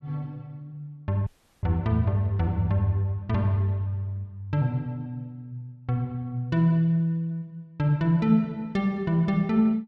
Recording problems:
dropout; at 1.5 s

